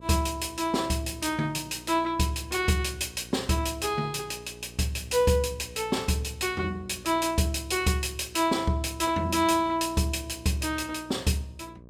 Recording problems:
hum; 60 Hz, harmonics up to 1 kHz, SNR 22 dB

